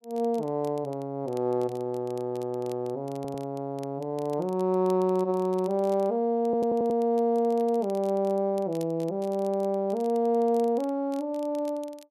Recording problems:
crackling; vinyl, SNR 27 dB
audio stuttering; at 3 s and at 6.5 s

